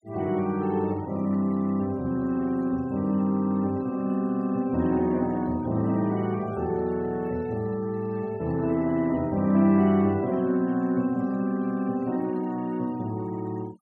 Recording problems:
denoising artefacts; signal-to-artefact ratio 25 dB

